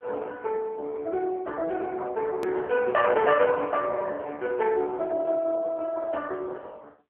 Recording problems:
telephone audio; 320 Hz to 3 kHz, AMR-NB
hard cut with a click; at 2.5 s

